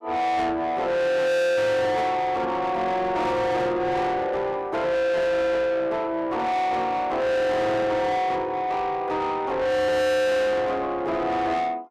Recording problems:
distortion; soft clipping, signal-to-distortion ratio 6 dB

